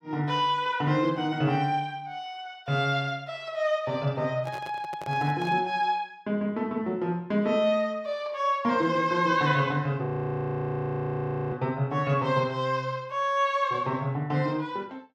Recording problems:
handling noise; from 4.5 to 5.5 s; peak -10 dB vs average level
frozen audio; at 10 s for 1.5 s

